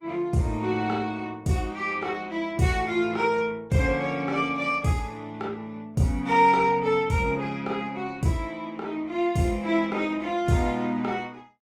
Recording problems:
lossy codec; Opus, log-spectral distance 2 dB, nothing above 19 kHz

